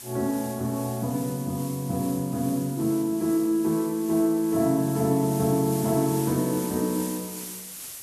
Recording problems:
background hiss; slope 0 dB per octave, SNR 12 dB

